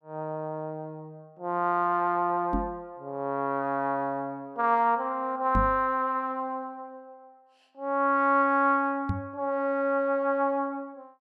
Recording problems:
microphone bump; at 2.5 s, at 5.5 s and at 9 s; peak +2 dB vs average level

